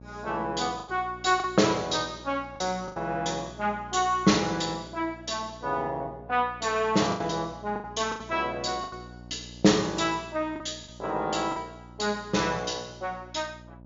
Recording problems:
treble missing; nothing above 7.2 kHz
hum; 60 Hz, harmonics up to 960 Hz, SNR 19 dB
packet loss; 5% of the sound replaced, filled with the last packet

